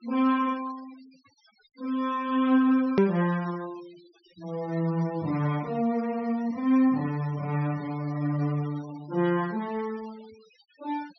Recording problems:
low-pass filter; nothing above 5.8 kHz
noise reduction artefacts; signal-to-artefact ratio 23 dB
click at an edit; at 3 s

